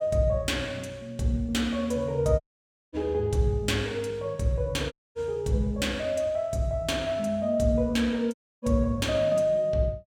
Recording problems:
dropout; at 2.5 s for 0.5 s, at 5 s and at 8.5 s

